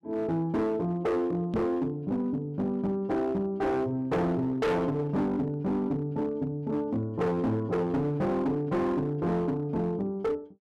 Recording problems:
distortion; hard clipping, signal-to-distortion ratio 8 dB
microphone bump; at 1.5 s; peak +2 dB vs average level

